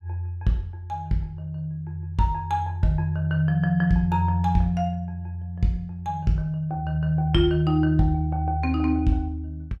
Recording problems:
none

